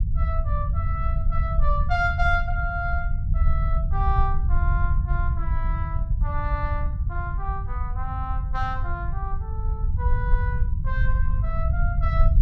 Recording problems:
rumble; below 78 Hz, SNR -5 dB

